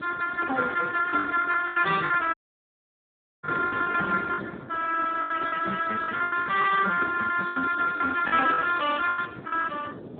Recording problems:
phone line; 320 Hz to 3.5 kHz, Speex
wind on the microphone; below 480 Hz, SNR 15 dB
packet loss; 12% of the sound replaced, filled with the last packet
audio cutting out; at 2.5 s for 1 s

